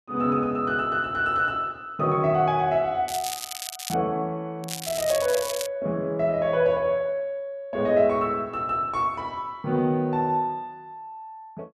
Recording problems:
crackle; at 3 s and from 4.5 to 5.5 s; loose cable, SNR 8 dB

